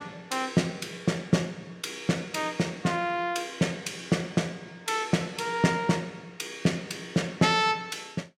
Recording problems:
none

